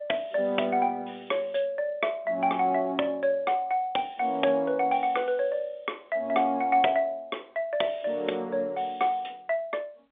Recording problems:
phone line; 260 Hz to 3.6 kHz, G.711

